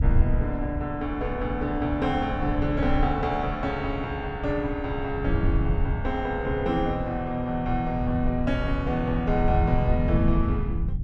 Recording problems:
low-frequency rumble; below 96 Hz, SNR 3 dB

